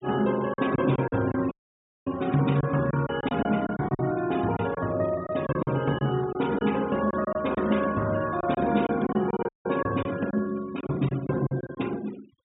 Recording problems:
treble cut off; nothing above 4 kHz
noise reduction artefacts; signal-to-artefact ratio 18 dB
lost packets; 9% of the sound replaced, filled with silence
audio cutting out; at 1.5 s for 0.5 s and at 9.5 s

